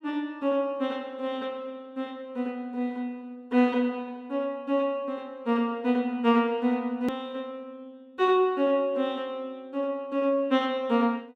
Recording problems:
edit click; at 7 s

